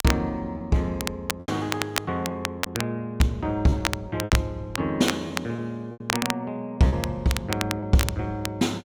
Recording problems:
crackle; vinyl, SNR 5 dB
packet loss; 6% of the sound replaced, filled with repeated pitch periods

